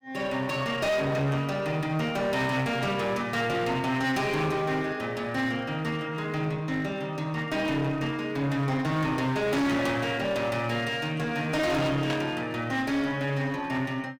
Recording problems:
distorted audio; hard clipping, uneven, signal-to-distortion ratio 7 dB
static burst; at 12 s; peak -2 dB vs average level

